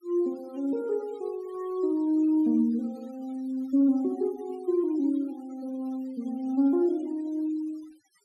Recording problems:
noise reduction artefacts; signal-to-artefact ratio 27 dB

